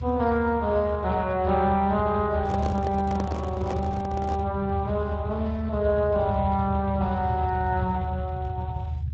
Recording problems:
lossy codec; Speex, log-spectral distance 3 dB
rumble; below 110 Hz, strongest tone 76 Hz, SNR 5 dB
handling noise; from 2.5 to 4.5 s; peak -3 dB vs average level

